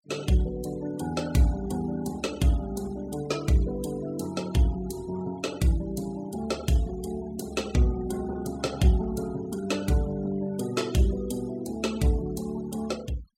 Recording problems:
noise reduction artefacts; signal-to-artefact ratio 18 dB

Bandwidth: 16 kHz